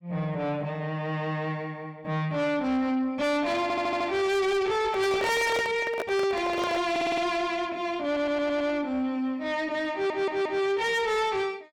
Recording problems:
distortion; soft clipping, signal-to-distortion ratio 7 dB
audio stuttering; 4 times, first at 3.5 s
handling noise; from 5 to 7 s; peak -1 dB vs average level

